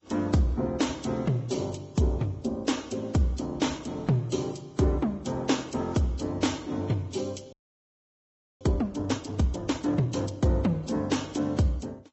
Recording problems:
lossy codec; AAC, then Vorbis, log-spectral distance 4 dB, nothing above 7.8 kHz
audio freezing; at 7.5 s for 1 s

